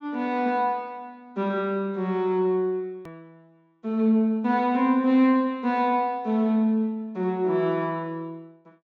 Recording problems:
treble cut off; nothing above 8 kHz
edit click; at 3 s

